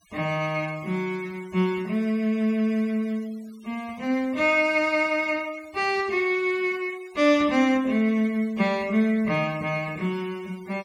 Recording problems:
denoising artefacts; signal-to-artefact ratio 25 dB

